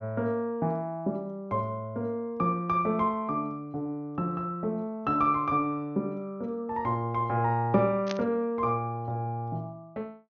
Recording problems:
treble cut off; nothing above 6.5 kHz
burst of static; at 8 s; peak -2 dB vs average level

